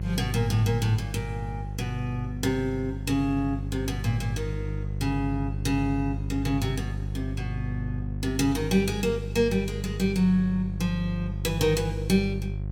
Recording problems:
hum; 50 Hz, harmonics up to 400 Hz, SNR 5 dB

